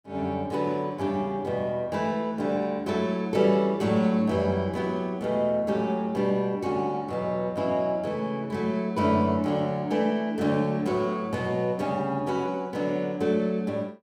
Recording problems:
none

